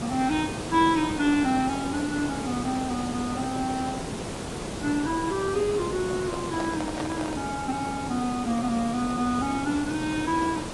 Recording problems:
codec artefacts; AAC, log-spectral distance 7 dB, nothing above 10.1 kHz
hiss; slope -6 dB per octave, SNR 6 dB
handling noise; from 6 to 7.5 s; peak -3 dB vs average level

